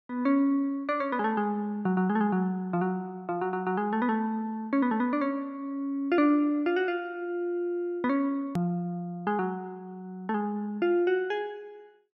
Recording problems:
edit click; at 8.5 s

